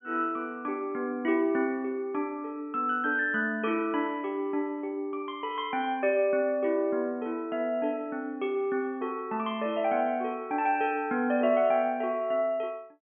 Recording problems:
low-pass filter; nothing above 3.4 kHz

